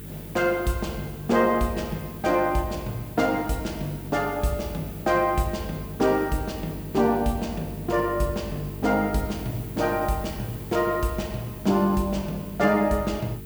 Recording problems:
electrical hum; 50 Hz, harmonics up to 450 Hz, SNR 14 dB
hiss; SNR 17 dB

